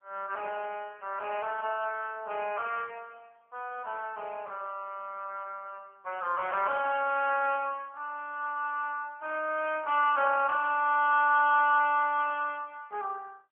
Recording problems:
phone line; 370 Hz to 3.2 kHz, AMR-NB

